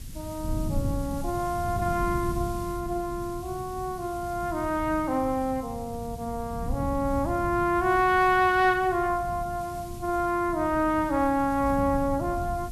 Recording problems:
background hiss; slope +2 dB per octave, SNR 21 dB
wind noise; below 150 Hz, SNR 10 dB

